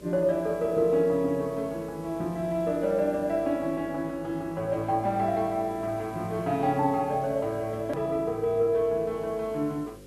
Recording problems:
electrical hum; 50 Hz, harmonics up to 550 Hz, SNR 21 dB
hiss; slope 0 dB per octave, SNR 27 dB
edit click; at 8 s

